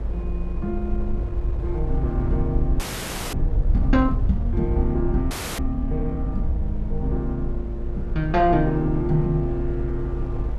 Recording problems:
low-frequency rumble; below 62 Hz, SNR 2 dB
wind on the microphone; below 480 Hz, SNR 13 dB
audio freezing; at 3 s for 0.5 s and at 5.5 s

